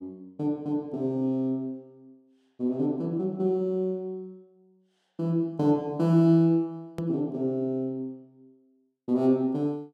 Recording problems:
click at an edit; at 7 s

